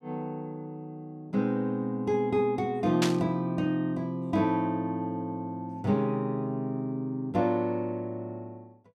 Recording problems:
burst of static; at 3 s; peak +4 dB vs average level

